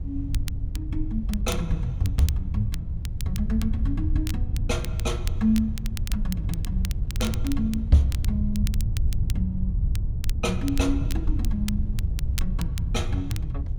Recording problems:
low-frequency rumble; below 92 Hz, SNR 0 dB
wind noise; below 240 Hz, SNR 24 dB
crackle; vinyl, SNR 13 dB

